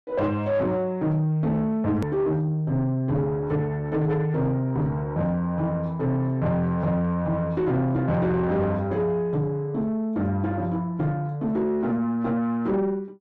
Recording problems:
distortion; soft clipping, signal-to-distortion ratio 10 dB
edit click; at 2 s

